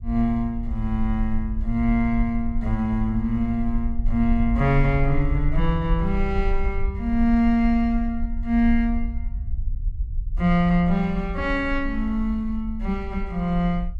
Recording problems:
low-frequency rumble; below 52 Hz, SNR 6 dB

